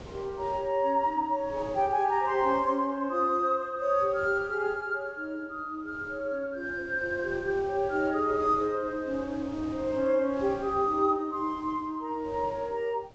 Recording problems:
treble cut off; nothing above 8 kHz
wind noise; below 700 Hz, SNR 20 dB

